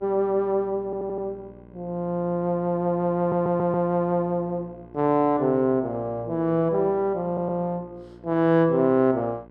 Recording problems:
hum; 60 Hz, harmonics up to 1.6 kHz, SNR 24 dB
audio stuttering; at 1 s, at 3 s and at 7.5 s

